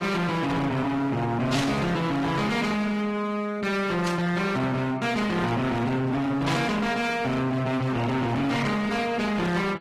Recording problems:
lossy codec; AAC, log-spectral distance 3 dB, nothing above 13.1 kHz
distortion; hard clipping, signal-to-distortion ratio 7 dB
static burst; at 1.5 s, at 4 s and at 6.5 s; peak 0 dB vs average level

